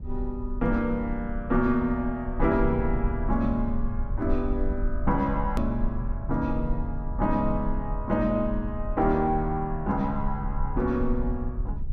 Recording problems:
low-frequency rumble; below 60 Hz, SNR 6 dB
hard cut with a click; at 5.5 s

